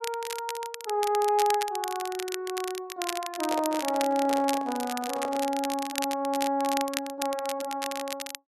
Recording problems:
crackling; vinyl, SNR 7 dB
microphone handling noise; from 3.5 to 5.5 s; peak -2 dB vs average level

